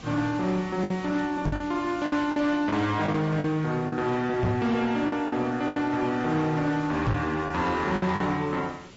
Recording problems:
low-pass filter; nothing above 7.6 kHz
codec artefacts; MP3, then MP3, log-spectral distance 2 dB
distortion; hard clipping, signal-to-distortion ratio 11 dB
hiss; SNR 20 dB
lost packets; 8% of the sound replaced, filled with the last packet
microphone thump; at 1.5 s, at 4.5 s and at 7 s; peak +4 dB vs average level

